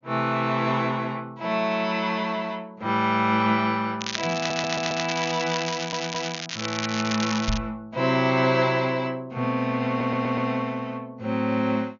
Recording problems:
low-pass filter; nothing above 6.8 kHz
crackling; from 4 to 7.5 s; loose cable, SNR 6 dB
stutter; at 4.5 s, at 5.5 s and at 10 s
microphone bump; at 7.5 s; peak 0 dB vs average level

